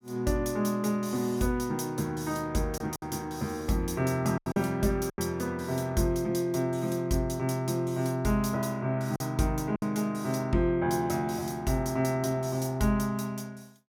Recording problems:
lost packets; 3% of the sound replaced, filled with silence

